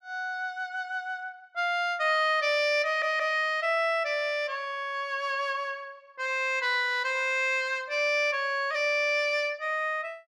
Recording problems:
audio stuttering; at 3 s

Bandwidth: 13 kHz